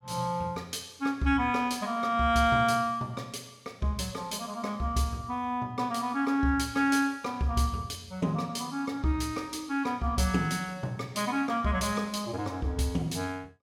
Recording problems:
none

